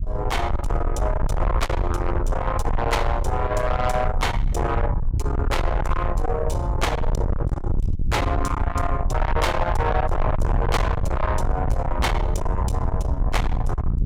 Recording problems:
distorted audio; soft clipping, signal-to-distortion ratio 7 dB
low-frequency rumble; below 100 Hz, SNR 1 dB
wind on the microphone; below 90 Hz, SNR 1 dB

